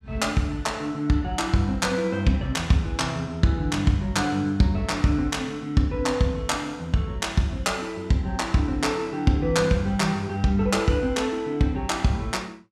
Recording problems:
none

